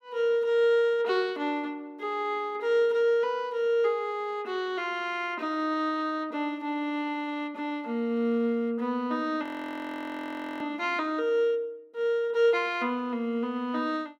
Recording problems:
frozen audio; at 9.5 s for 1 s

